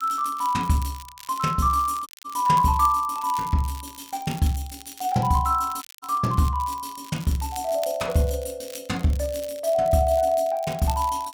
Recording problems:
crackling; vinyl, SNR 19 dB
dropout; at 2 s and at 6 s

